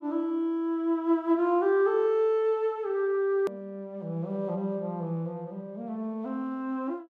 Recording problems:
hard cut with a click; at 3.5 s

